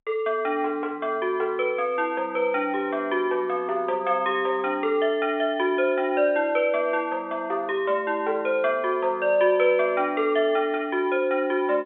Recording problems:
telephone audio; 300 Hz to 3.6 kHz, G.711

